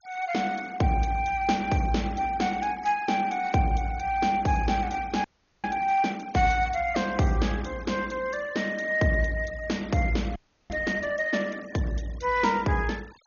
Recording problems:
treble cut off; nothing above 6.7 kHz
denoising artefacts; signal-to-artefact ratio 22 dB
audio freezing; at 5 s and at 10 s

